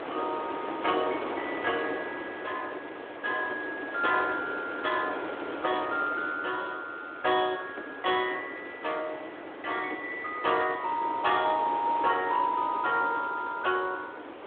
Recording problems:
phone line; 260 Hz to 3.7 kHz, Speex
wind noise; below 1.2 kHz, SNR 8 dB

